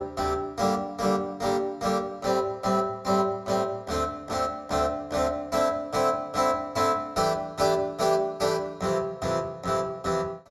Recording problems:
none

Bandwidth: 15 kHz